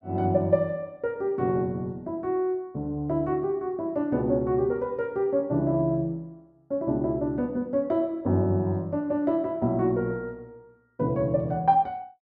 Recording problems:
none

